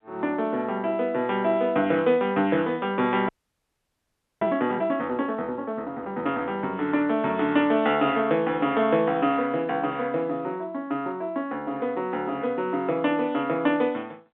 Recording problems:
phone line; 170 Hz to 3.8 kHz, G.711
frozen audio; at 3.5 s for 1 s

